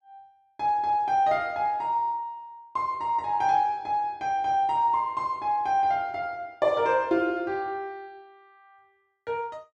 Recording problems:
none

